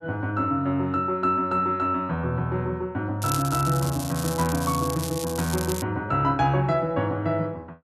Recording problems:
crackling; from 3 to 6 s; loose cable, SNR 9 dB

